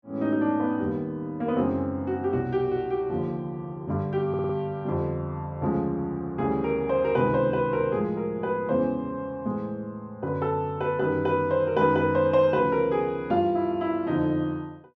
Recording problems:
audio stuttering; at 4.5 s

